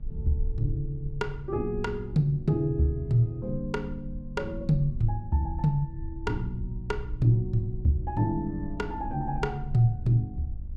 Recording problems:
hum; 50 Hz, harmonics up to 600 Hz, SNR 24 dB
wind noise; below 64 Hz, SNR 11 dB

